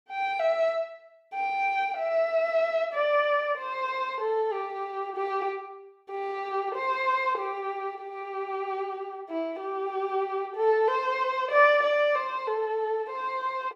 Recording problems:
none

